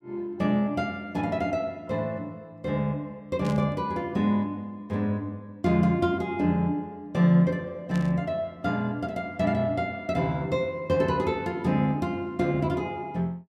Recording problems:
burst of static; at 3.5 s and at 8 s; peak -12 dB vs average level

